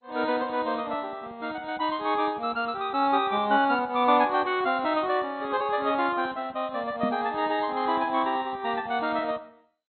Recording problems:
lossy compression; MP2, log-spectral distance 3 dB, nothing above 4 kHz
microphone thump; at 7 s; peak 0 dB vs average level

